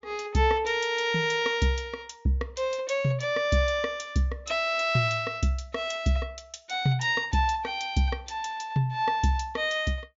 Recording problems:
treble missing; nothing above 7.2 kHz

